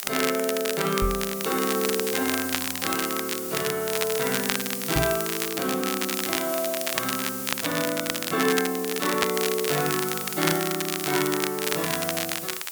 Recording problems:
hiss; SNR 4 dB
crackling; vinyl, SNR 2 dB
microphone thump; at 1 s and at 5 s; peak +4 dB vs average level

